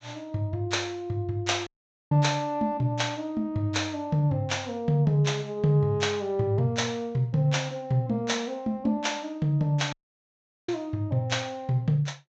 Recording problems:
low-pass filter; nothing above 8 kHz
audio cutting out; at 1.5 s and at 10 s for 1 s

